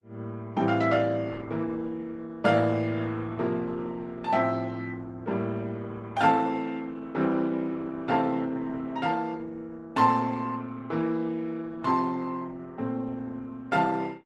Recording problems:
lossy compression; Opus, log-spectral distance 3 dB, nothing above 13.1 kHz

